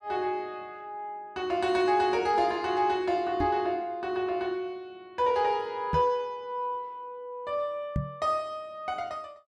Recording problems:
microphone thump; at 3.5 s, at 6 s and at 8 s; peak +3 dB vs average level

